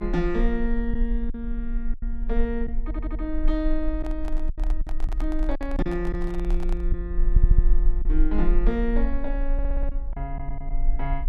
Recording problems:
hum; 50 Hz, harmonics up to 450 Hz, SNR 15 dB
rumble; below 38 Hz, SNR -2 dB
packet loss; 5% of the sound replaced, filled with silence
audio stuttering; at 3 s, at 7.5 s and at 9.5 s
microphone handling noise; from 4 to 7 s; peak -5 dB vs average level

